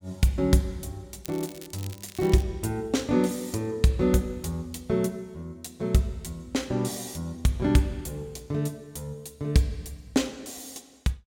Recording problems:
crackling; from 1.5 to 2.5 s; loose cable, SNR 17 dB

